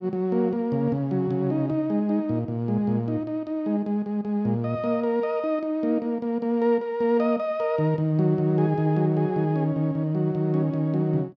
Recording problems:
none

